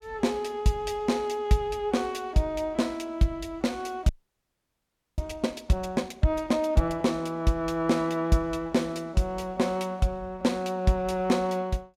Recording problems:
frozen audio; at 4 s for 1 s

